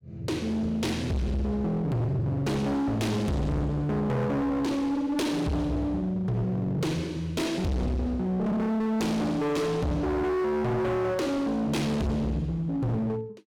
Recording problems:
distorted audio; hard clipping, signal-to-distortion ratio 6 dB

